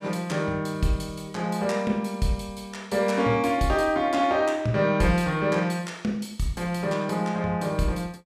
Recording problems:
none

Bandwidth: 15 kHz